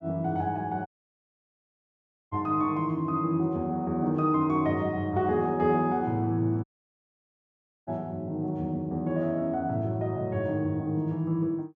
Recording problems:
audio cutting out; at 1 s for 1.5 s and at 6.5 s for 1 s

